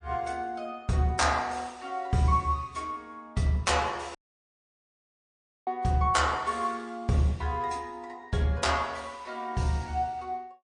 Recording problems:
codec artefacts; MP3, log-spectral distance 2 dB, nothing above 8.7 kHz
dropout; at 4 s for 1.5 s

